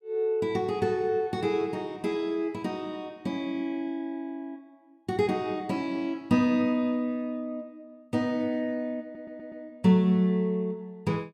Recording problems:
audio stuttering; at 9 s

